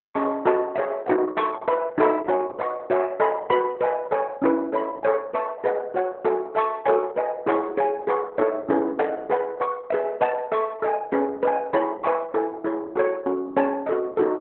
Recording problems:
lossy codec; Opus, log-spectral distance 3 dB

